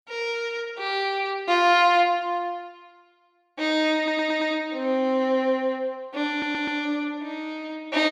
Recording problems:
audio stuttering; at 4 s and at 6.5 s

